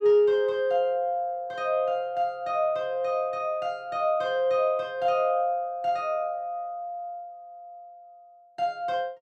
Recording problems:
none

